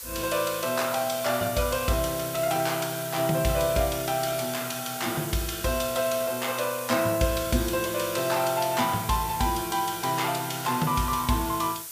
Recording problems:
background hiss; slope +1 dB per octave, SNR 9 dB

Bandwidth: 15 kHz